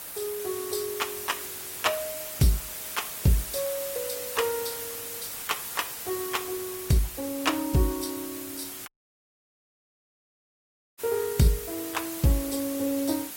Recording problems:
codec artefacts; Opus, log-spectral distance 10 dB, nothing above 16.5 kHz
background hiss; slope 0 dB per octave, SNR 6 dB
dropout; at 9 s for 2 s

